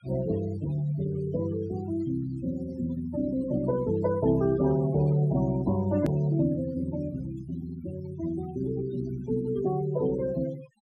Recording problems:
denoising artefacts; signal-to-artefact ratio 16 dB
edit click; at 6 s

